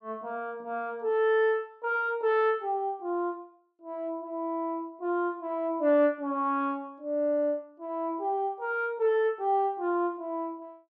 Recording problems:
none

